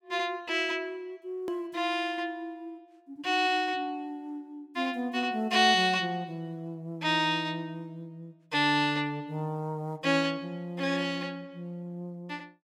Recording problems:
edit click; at 1.5 s

